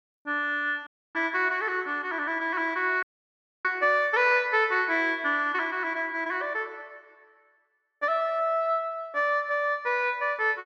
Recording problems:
dropout; at 1 s and at 3 s for 0.5 s

